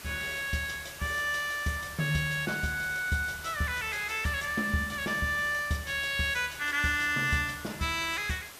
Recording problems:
hiss; slope -1 dB per octave, SNR 14 dB

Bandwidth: 14.5 kHz